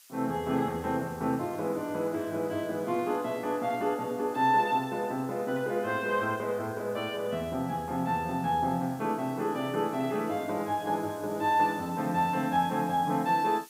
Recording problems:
background hiss; slope +4 dB per octave, SNR 23 dB

